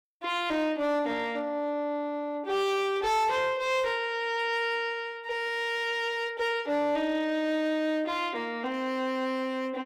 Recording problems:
distorted audio; hard clipping, uneven, signal-to-distortion ratio 11 dB

